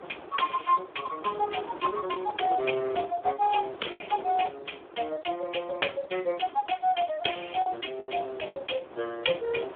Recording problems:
phone line; 280 Hz to 3.4 kHz, Speex
wind noise; below 960 Hz, SNR 16 dB
lost packets; 3% of the sound replaced, filled with the last packet

